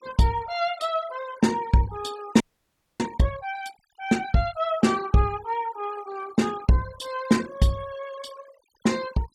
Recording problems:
denoising artefacts; signal-to-artefact ratio 19 dB
frozen audio; at 2.5 s for 0.5 s

